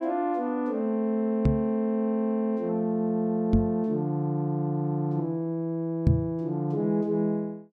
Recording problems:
knock on the microphone; at 1.5 s, at 3.5 s and at 6 s; peak +9 dB vs average level

